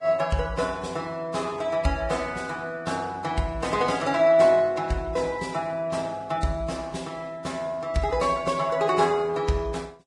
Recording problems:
codec artefacts; Vorbis, log-spectral distance 3 dB, nothing above 10.1 kHz

